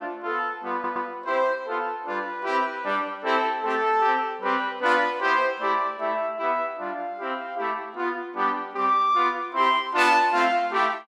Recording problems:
stutter; at 0.5 s

